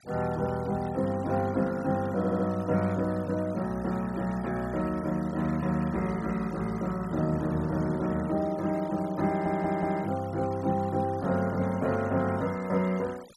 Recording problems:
noise reduction artefacts; signal-to-artefact ratio 20 dB
audio stuttering; at 2 s and at 9.5 s

